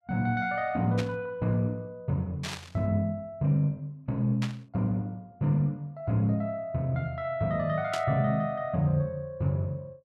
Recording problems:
static burst; 4 times, first at 1 s; peak -2 dB vs average level

